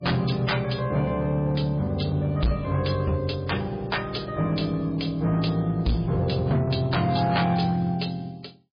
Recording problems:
lossy compression; MP3, log-spectral distance 5 dB
distortion; hard clipping, signal-to-distortion ratio 6 dB

